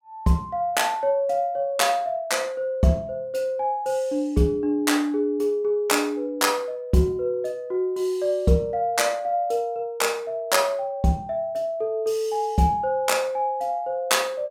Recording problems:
none

